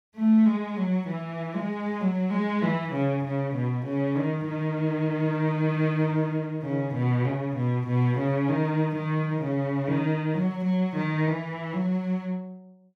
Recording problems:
none

